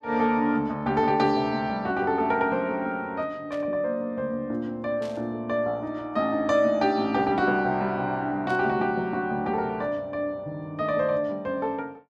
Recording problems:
static burst; at 3.5 s, at 5 s and at 8.5 s; peak -15 dB vs average level

